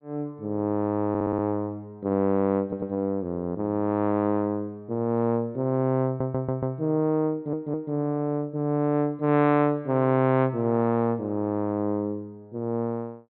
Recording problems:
treble missing; nothing above 4.1 kHz
stutter; 4 times, first at 1 s

